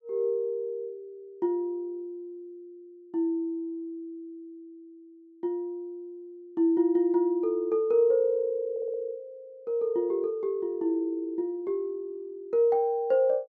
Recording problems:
audio stuttering; at 8.5 s

